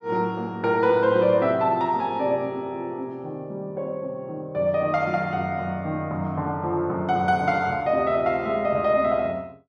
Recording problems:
none

